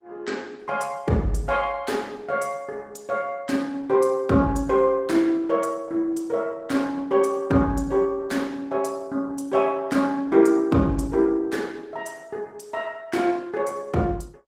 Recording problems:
lossy codec; Opus, log-spectral distance 3 dB

